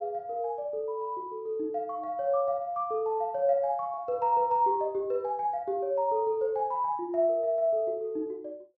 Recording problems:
treble missing; nothing above 6.7 kHz

